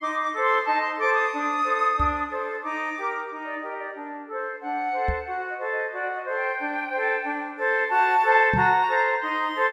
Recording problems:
microphone bump; at 2 s, at 5 s and at 8.5 s; peak 0 dB vs average level

